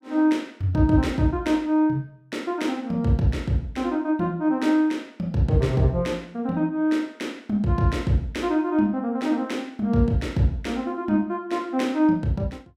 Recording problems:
none

